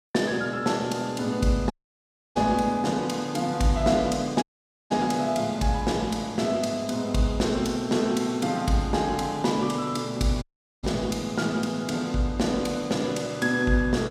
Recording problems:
audio cutting out; at 1.5 s for 0.5 s, at 4.5 s and at 10 s

